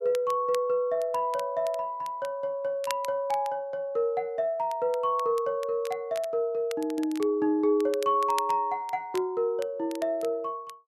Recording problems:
crackling; vinyl, SNR 18 dB

